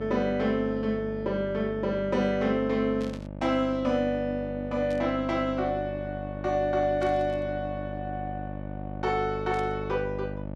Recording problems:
hum; 50 Hz, harmonics up to 950 Hz, SNR 9 dB
static burst; 4 times, first at 3 s; peak -14 dB vs average level

